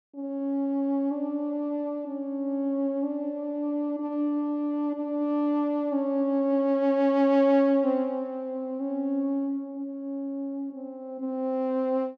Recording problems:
none

